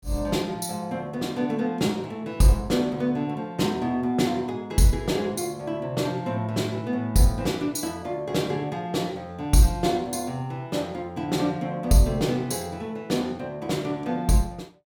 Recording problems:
none

